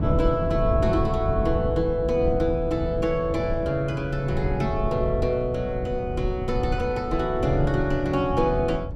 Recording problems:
wind noise; below 140 Hz, SNR 5 dB

